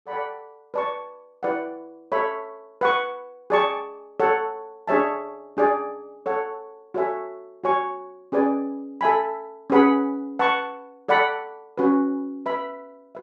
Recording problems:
none

